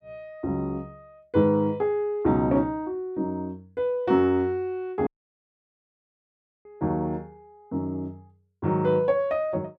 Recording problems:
dropout; at 5 s for 1.5 s

